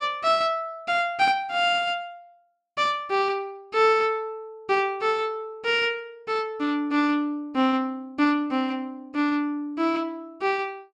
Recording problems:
none

